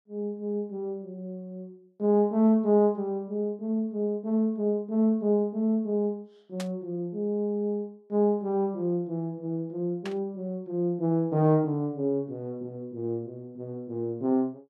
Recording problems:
burst of static; at 6.5 s and at 10 s; peak -7 dB vs average level

